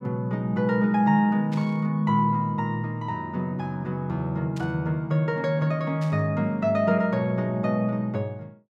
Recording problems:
burst of static; at 1.5 s, at 4.5 s and at 6 s; peak -13 dB vs average level

